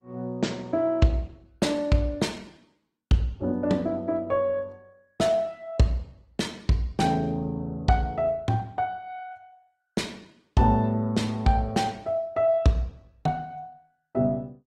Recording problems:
lossy compression; Opus, log-spectral distance 2 dB, nothing above 16.1 kHz

